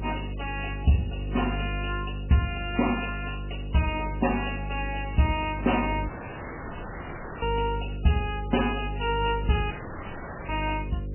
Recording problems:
lossy compression; MP3, log-spectral distance 10 dB, nothing above 2.5 kHz
hum; 50 Hz, harmonics up to 550 Hz, SNR 6 dB
dropout; at 6 s for 1.5 s and at 9.5 s for 1 s

